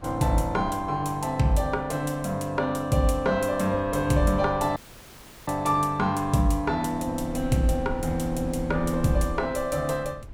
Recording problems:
wind noise; below 110 Hz, SNR 15 dB
dropout; at 5 s for 0.5 s

